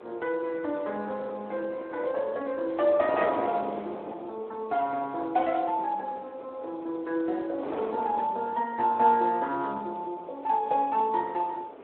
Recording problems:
phone line; 240 Hz to 3 kHz, Speex
wind noise; below 760 Hz, SNR 12 dB

